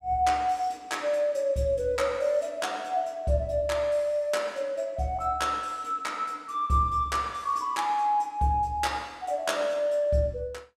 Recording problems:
none

